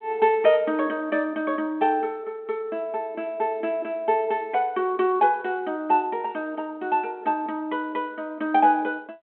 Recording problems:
phone line; 240 Hz to 3.5 kHz, G.726

